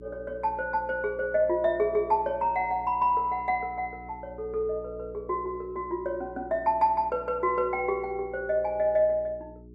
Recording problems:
hum; 60 Hz, harmonics up to 420 Hz, SNR 20 dB

